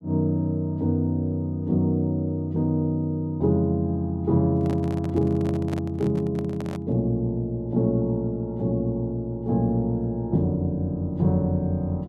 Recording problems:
handling noise; from 4.5 to 7 s; peak -7 dB vs average level

